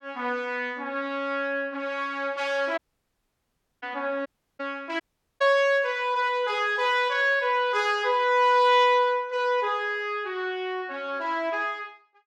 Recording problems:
audio cutting out; at 3 s for 1 s, at 4.5 s and at 5 s

